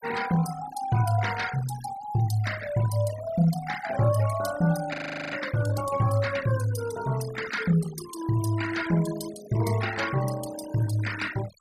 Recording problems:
denoising artefacts; signal-to-artefact ratio 12 dB
audio freezing; at 5 s

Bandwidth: 14.5 kHz